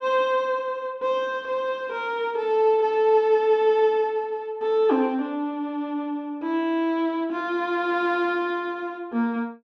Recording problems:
none

